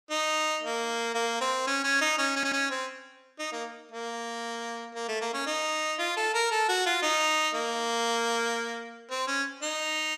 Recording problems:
stutter; at 2.5 s

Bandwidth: 14.5 kHz